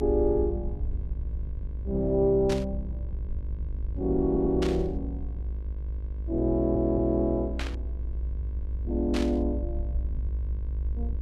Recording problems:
electrical hum; 50 Hz, harmonics up to 2.1 kHz, SNR 24 dB
low-frequency rumble; below 62 Hz, strongest tone 60 Hz, SNR 6 dB
static burst; 4 times, first at 2.5 s; peak -4 dB vs average level
audio stuttering; at 4.5 s and at 6.5 s

